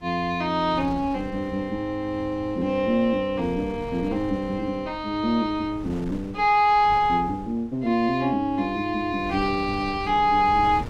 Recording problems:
wind on the microphone; below 280 Hz, SNR 17 dB

